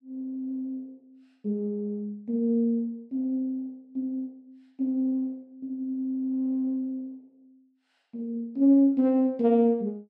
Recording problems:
none

